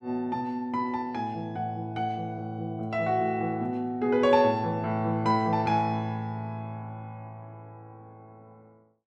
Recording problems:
none

